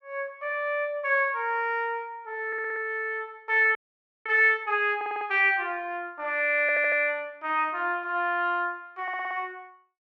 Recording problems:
stutter; 4 times, first at 2.5 s
audio freezing; at 4 s for 0.5 s

